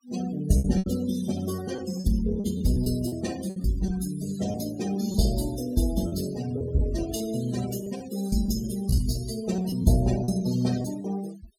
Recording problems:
denoising artefacts; signal-to-artefact ratio 13 dB
lost packets; 8% of the sound replaced, filled with repeated pitch periods

